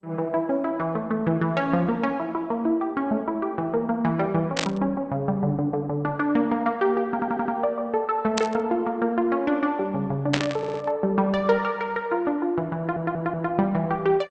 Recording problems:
codec artefacts; MP2, then Opus, log-spectral distance 2 dB
burst of static; at 4.5 s, at 8.5 s and at 10 s; peak +5 dB vs average level
stutter; at 7 s, at 11 s and at 13 s

